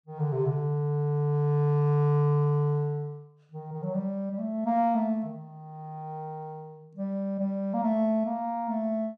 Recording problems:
none

